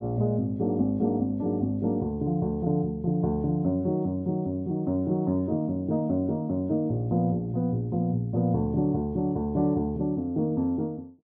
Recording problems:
none

